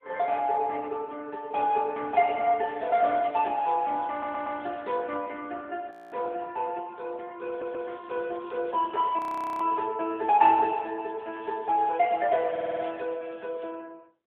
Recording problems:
phone line; 240 Hz to 3.3 kHz, AMR-NB
crackling; from 2.5 to 5 s, from 7.5 to 10 s and from 11 to 14 s; loose cable, SNR 30 dB
audio stuttering; at 4 s, at 7.5 s and at 13 s
frozen audio; at 6 s and at 9 s

